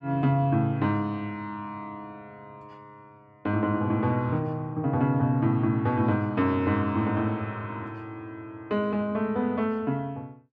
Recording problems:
none

